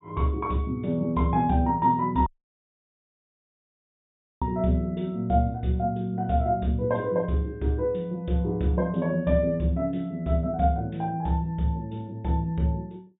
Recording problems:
treble cut off; nothing above 4 kHz
dropout; at 2.5 s for 2 s

